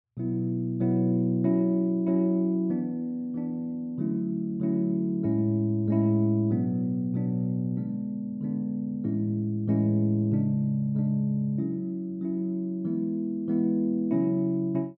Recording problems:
none

